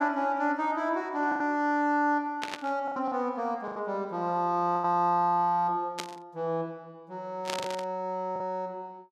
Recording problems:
lost packets; 5% of the sound replaced, filled with the last packet
static burst; at 2.5 s, at 6 s and at 7.5 s; peak -1 dB vs average level

